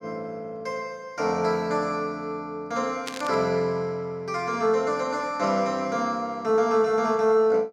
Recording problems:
burst of static; at 3 s; peak -3 dB vs average level

